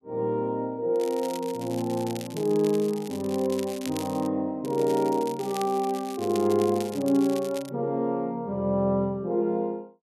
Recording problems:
crackle; from 1 to 4.5 s and from 4.5 to 7.5 s; loose cable, SNR 16 dB

